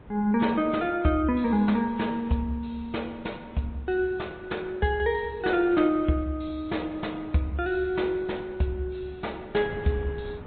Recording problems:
low-pass filter; nothing above 4 kHz
lossy compression; MP3, log-spectral distance 3 dB
wind on the microphone; below 390 Hz, SNR 20 dB

